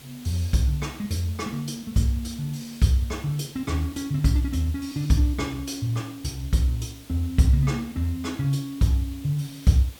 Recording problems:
hiss; SNR 21 dB

